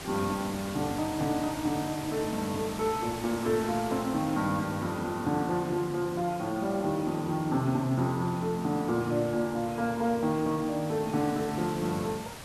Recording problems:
hiss; slope -3 dB per octave, SNR 12 dB

